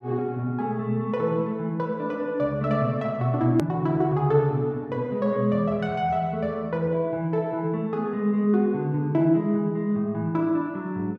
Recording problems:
hard cut with a click; at 3.5 s

